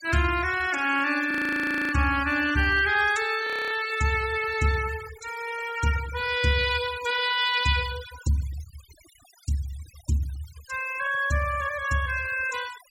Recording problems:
noise reduction artefacts; signal-to-artefact ratio 14 dB
audio freezing; at 1.5 s for 0.5 s and at 3.5 s

